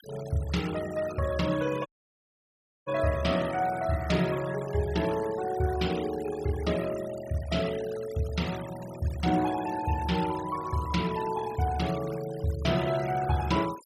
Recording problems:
denoising artefacts; signal-to-artefact ratio 15 dB
dropout; at 2 s for 1 s

